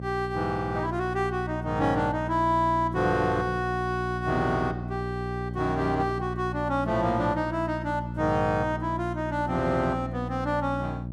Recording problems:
hum; 60 Hz, harmonics up to 600 Hz, SNR 7 dB

